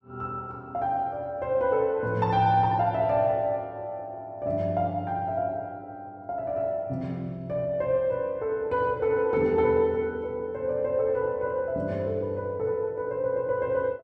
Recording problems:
none

